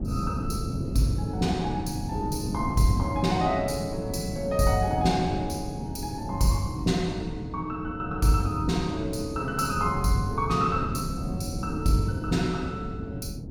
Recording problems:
wind noise; below 240 Hz, SNR 6 dB

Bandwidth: 17.5 kHz